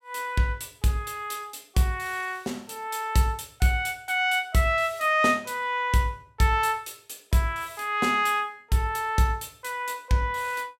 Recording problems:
none

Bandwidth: 16 kHz